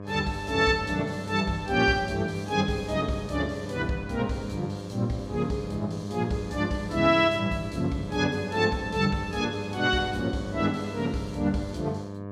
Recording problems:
hum; 50 Hz, harmonics up to 1.7 kHz, SNR 10 dB

